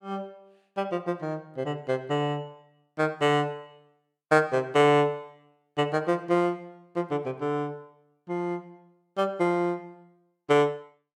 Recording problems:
none

